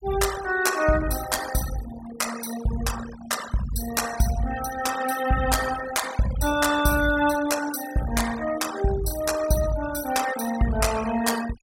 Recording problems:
noise reduction artefacts; signal-to-artefact ratio 12 dB

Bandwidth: 16 kHz